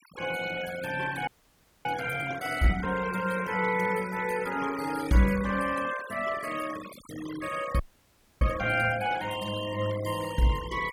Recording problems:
noise reduction artefacts; signal-to-artefact ratio 14 dB
frozen audio; at 1.5 s for 0.5 s and at 8 s for 0.5 s

